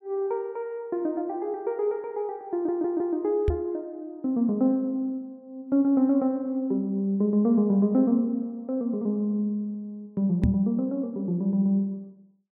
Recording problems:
audio stuttering; at 2.5 s
microphone bump; at 3.5 s and at 10 s; peak +6 dB vs average level

